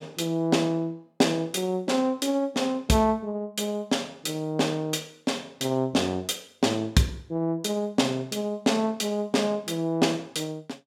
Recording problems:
none

